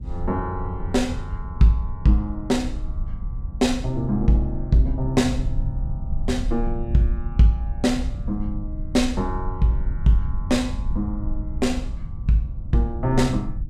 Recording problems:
low-frequency rumble; below 72 Hz, SNR 7 dB

